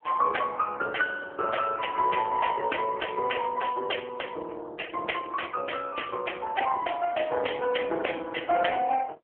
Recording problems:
phone line; 340 Hz to 2.7 kHz, AMR-NB

